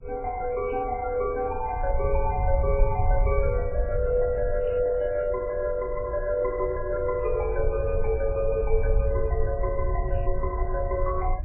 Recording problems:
codec artefacts; MP2, then MP3, log-spectral distance 2 dB, nothing above 2.4 kHz
low-frequency rumble; below 70 Hz, SNR 4 dB
crackling; at 0.5 s, at 4.5 s and at 10 s; loose cable, SNR 27 dB

